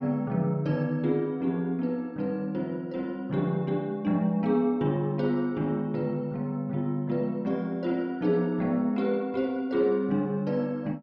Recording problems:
none

